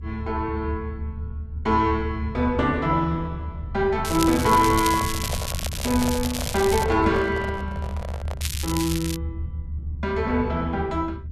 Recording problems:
low-frequency rumble; below 90 Hz, strongest tone 74 Hz, SNR 8 dB
crackle; from 4 to 7 s and at 8.5 s; loose cable, SNR 7 dB
handling noise; from 4.5 to 8.5 s; peak -4 dB vs average level

